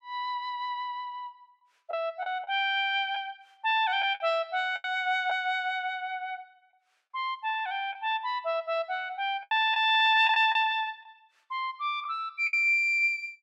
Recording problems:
lost packets; 5% of the sound replaced, filled with the last packet

